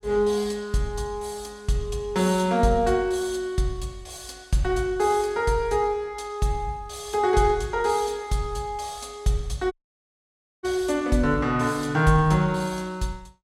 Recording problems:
audio cutting out; at 9.5 s for 1 s

